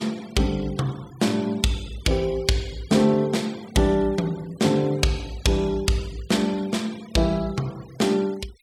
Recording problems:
denoising artefacts; signal-to-artefact ratio 22 dB

